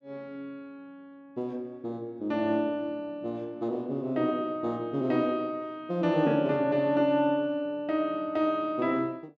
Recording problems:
none

